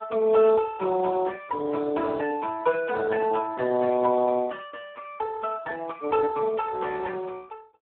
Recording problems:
phone line; 260 Hz to 2.3 kHz, Speex

